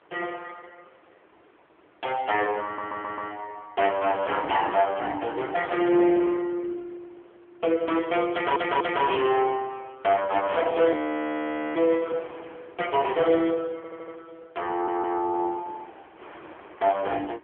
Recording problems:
telephone audio; 280 Hz to 3.3 kHz, AMR-NB
distortion; hard clipping, uneven, signal-to-distortion ratio 7 dB
wind on the microphone; below 1.5 kHz, SNR 23 dB
audio stuttering; 4 times, first at 2.5 s
audio freezing; at 11 s for 1 s

